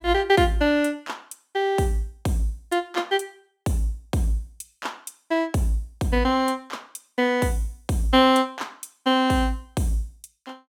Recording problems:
none

